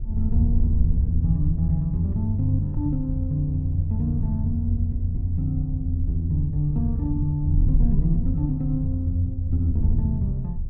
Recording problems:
wind noise; below 76 Hz, SNR 3 dB

